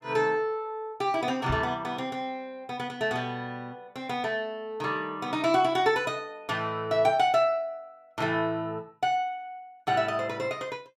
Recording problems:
microphone thump; at 1.5 s; peak -1 dB vs average level

